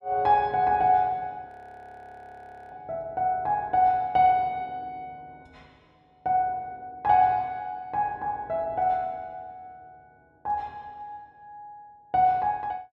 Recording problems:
frozen audio; at 1.5 s for 1 s

